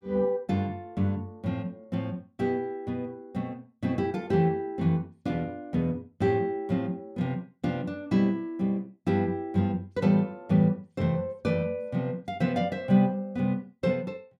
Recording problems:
none

